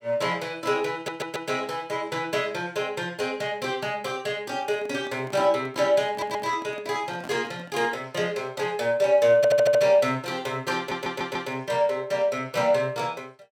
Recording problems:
audio stuttering; 4 times, first at 1 s
handling noise; from 4.5 to 8 s; peak -10 dB vs average level

